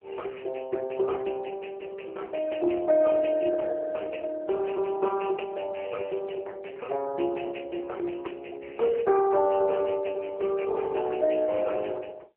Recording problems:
phone line; 320 Hz to 3.1 kHz, AMR-NB

